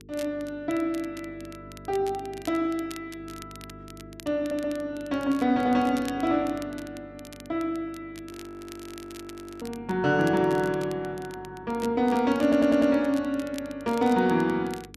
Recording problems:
hum; 50 Hz, harmonics up to 450 Hz, SNR 22 dB
crackling; vinyl, SNR 21 dB
audio stuttering; at 4.5 s and at 12 s
frozen audio; at 8.5 s for 1.5 s

